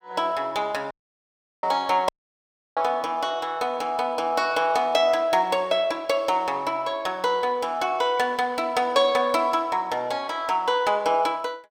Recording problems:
audio cutting out; at 1 s for 0.5 s and at 2 s for 0.5 s

